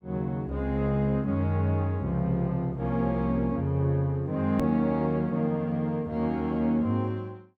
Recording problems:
edit click; at 4.5 s

